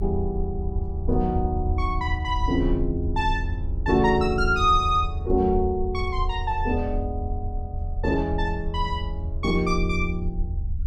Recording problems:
low-frequency rumble; below 80 Hz, SNR 4 dB

